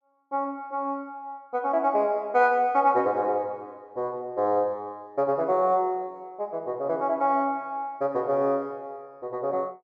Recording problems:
none

